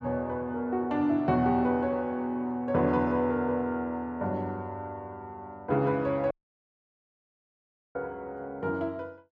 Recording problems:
audio cutting out; at 6.5 s for 1.5 s

